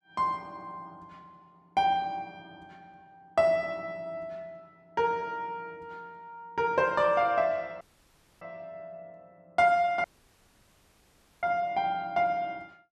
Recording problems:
dropout; at 8 s for 0.5 s and at 10 s for 1.5 s

